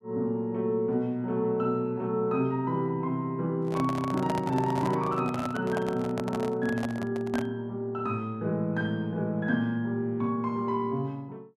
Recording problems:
handling noise; from 3.5 to 7.5 s; peak 0 dB vs average level

